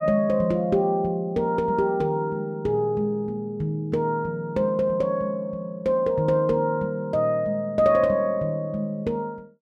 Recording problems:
none

